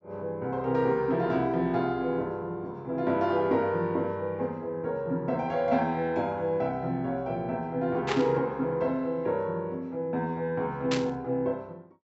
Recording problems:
treble missing; nothing above 7.7 kHz
burst of static; at 8 s and at 11 s; peak +2 dB vs average level

